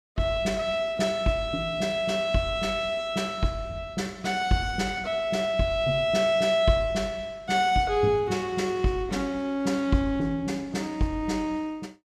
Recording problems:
none

